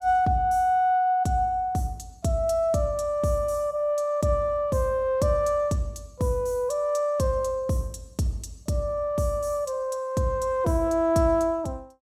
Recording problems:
none

